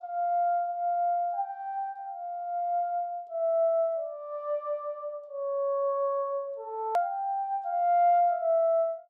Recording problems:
hard cut with a click; at 7 s

